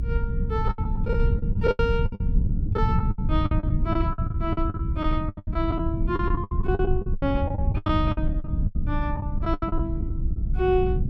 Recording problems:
low-frequency rumble; below 120 Hz, SNR -2 dB
lost packets; 19% of the sound replaced, filled with the last packet

